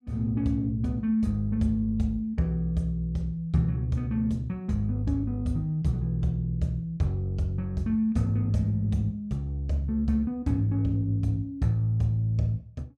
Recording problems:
none

